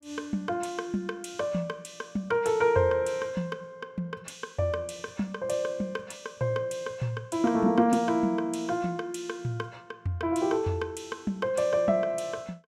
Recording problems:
none

